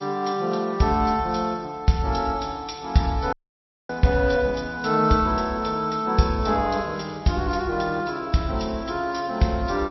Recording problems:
lossy codec; MP3, log-spectral distance 5 dB, nothing above 5.7 kHz
audio cutting out; at 3.5 s for 0.5 s

